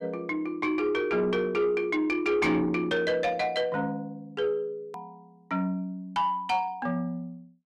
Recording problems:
distorted audio; soft clipping, signal-to-distortion ratio 12 dB
click at an edit; at 5 s

